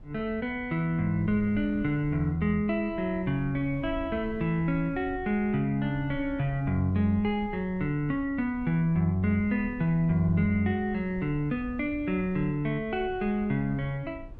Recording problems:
wind on the microphone; below 100 Hz, SNR 17 dB

